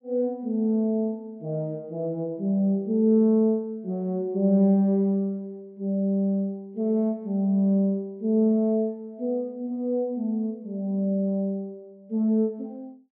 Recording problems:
none

